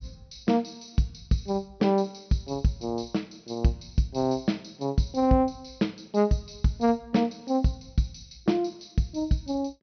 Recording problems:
treble missing; nothing above 6 kHz

